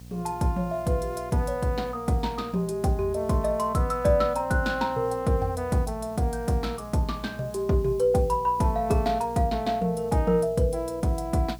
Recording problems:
hum; 60 Hz, harmonics up to 540 Hz, SNR 19 dB
hiss; SNR 28 dB

